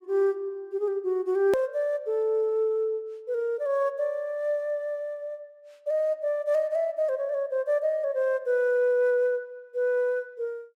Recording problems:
hard cut with a click; at 1.5 s

